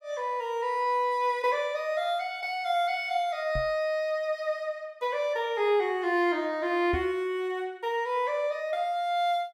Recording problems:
knock on the microphone; at 3.5 s and at 7 s; peak -1 dB vs average level

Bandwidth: 16.5 kHz